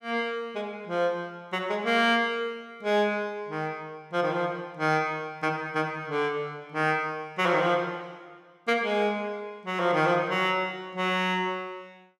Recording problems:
none

